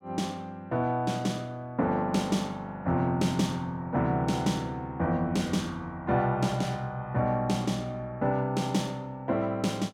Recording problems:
none

